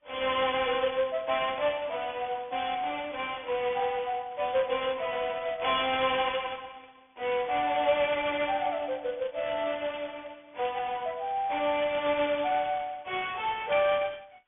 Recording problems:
phone line; 320 Hz to 3.5 kHz, G.726

